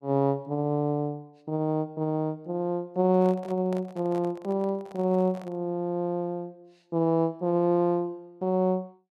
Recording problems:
microphone handling noise; from 3 to 5.5 s; peak -10 dB vs average level

